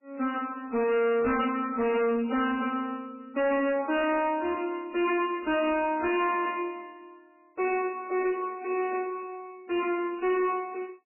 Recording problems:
lossy compression; MP3, log-spectral distance 3 dB, nothing above 2.6 kHz
distorted audio; hard clipping, signal-to-distortion ratio 8 dB

